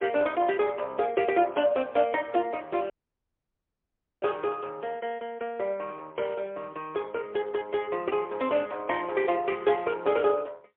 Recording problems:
phone line; 300 Hz to 3.3 kHz, AMR-NB, then MP3
dropout; at 3 s for 1.5 s

